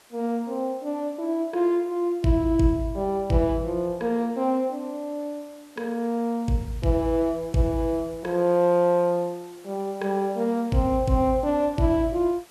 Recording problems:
background hiss; slope -2 dB per octave, SNR 27 dB

